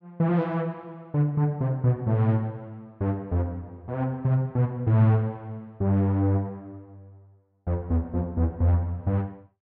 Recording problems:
none

